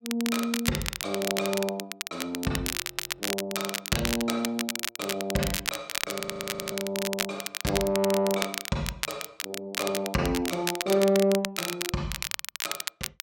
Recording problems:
crackle; vinyl, SNR 2 dB
frozen audio; at 3 s and at 6 s for 0.5 s

